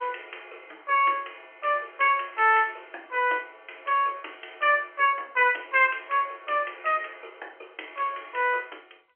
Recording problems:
telephone audio; 300 Hz to 3.2 kHz, G.711

